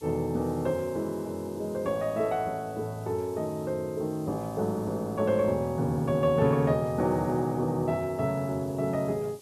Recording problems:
background hiss; SNR 25 dB

